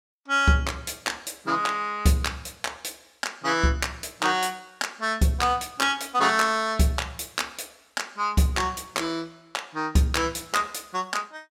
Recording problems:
none

